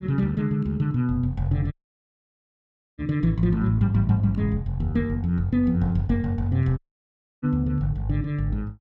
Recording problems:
dropout; at 1.5 s for 1.5 s and at 7 s for 0.5 s

